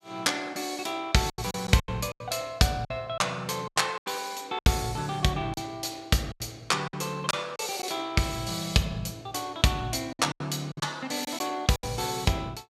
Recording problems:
packet loss; 9% of the sound replaced, filled with silence

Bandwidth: 15.5 kHz